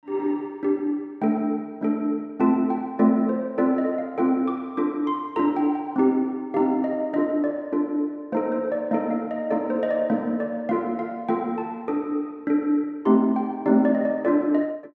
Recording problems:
none

